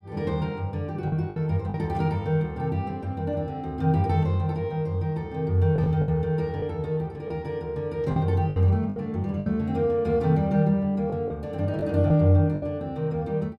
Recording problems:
packet loss; 5% of the sound replaced, filled with the last packet

